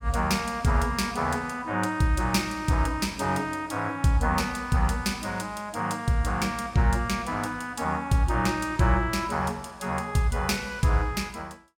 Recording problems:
none

